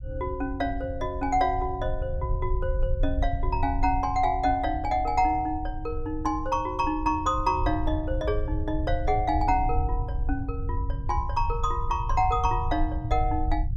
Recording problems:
low-frequency rumble; below 78 Hz, SNR 5 dB

